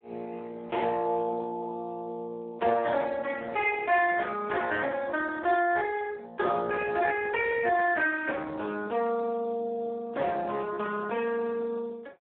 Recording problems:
telephone audio; 300 Hz to 3.5 kHz, Speex

